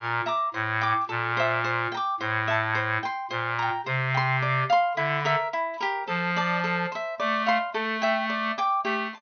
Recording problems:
treble missing; nothing above 6.3 kHz

